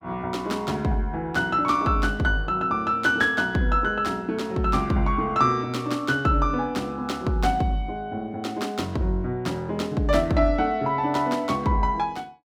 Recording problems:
none

